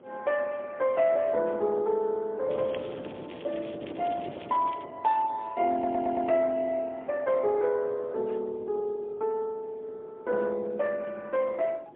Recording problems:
telephone audio; 280 Hz to 3.6 kHz, AMR-NB, then MP3
wind noise; below 570 Hz, SNR 19 dB
crackle; from 2.5 to 5 s; loose cable, SNR 22 dB
audio stuttering; at 5.5 s

